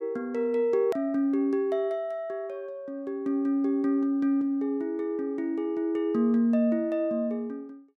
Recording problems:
hard cut with a click; at 1 s

